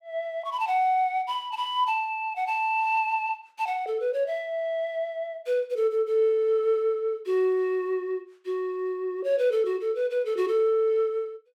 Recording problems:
none

